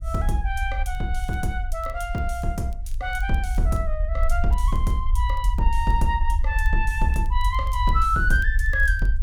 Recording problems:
rumble; below 56 Hz, SNR 0 dB
crackle; vinyl, SNR 29 dB

